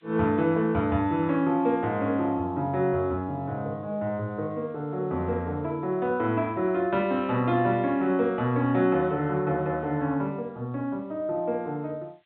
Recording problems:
low-pass filter; nothing above 4 kHz
hiss; SNR 41 dB

